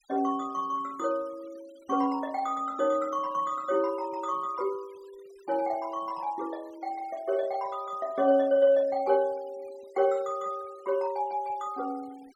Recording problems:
denoising artefacts; signal-to-artefact ratio 26 dB

